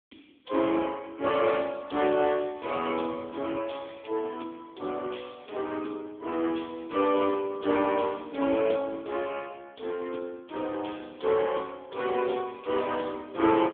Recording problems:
telephone audio; 240 Hz to 3.5 kHz, AMR-NB

